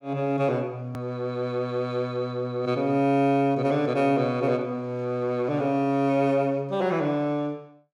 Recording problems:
edit click; at 1 s

